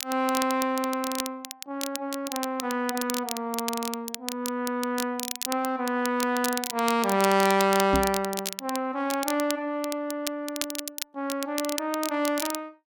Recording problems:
crackle; vinyl, SNR 7 dB
knock on the microphone; at 8 s; peak +4 dB vs average level

